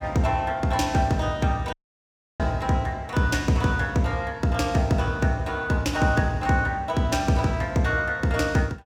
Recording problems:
audio cutting out; at 1.5 s for 0.5 s

